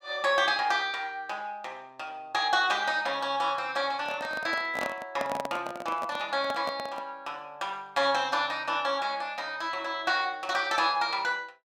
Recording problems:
microphone handling noise; from 4 to 7 s; peak -1 dB vs average level

